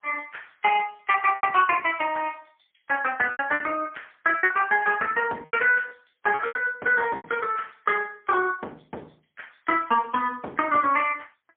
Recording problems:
phone line; 280 Hz to 3.3 kHz, AMR-NB, then MP3
packet loss; 7% of the sound replaced, filled with repeated pitch periods

